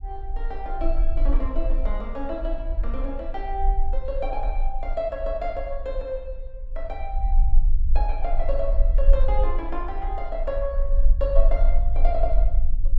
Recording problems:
rumble; below 40 Hz, strongest tone 18 Hz, SNR -4 dB

